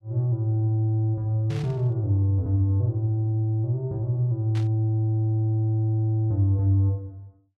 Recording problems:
static burst; at 1.5 s and at 4.5 s; peak -14 dB vs average level

